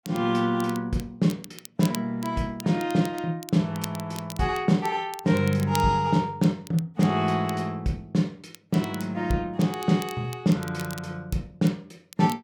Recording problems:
crackle; vinyl, SNR 18 dB

